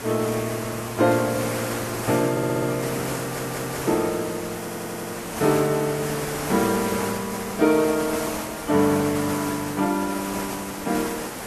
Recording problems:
codec artefacts; AAC, log-spectral distance 10 dB
hiss; slope -5 dB per octave, SNR 5 dB
audio stuttering; at 2.5 s, at 3 s and at 4.5 s

